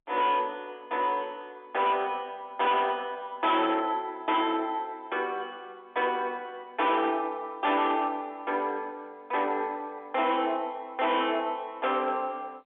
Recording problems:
telephone audio; 220 Hz to 3.5 kHz, G.711
distortion; hard clipping, signal-to-distortion ratio 10 dB

